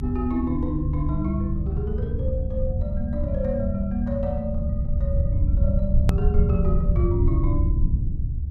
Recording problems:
low-frequency rumble; below 98 Hz, SNR -4 dB
hard cut with a click; at 6 s

